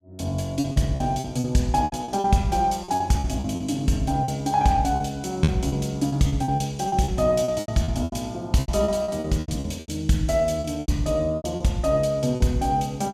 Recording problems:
lost packets; 14% of the sound replaced, filled with repeated pitch periods

